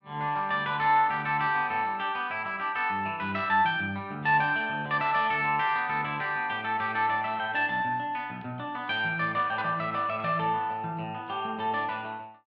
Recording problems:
none

